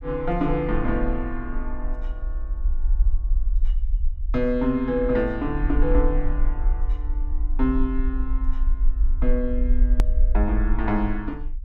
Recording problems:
low-frequency rumble; below 46 Hz, strongest tone 22 Hz, SNR 1 dB
edit click; at 10 s

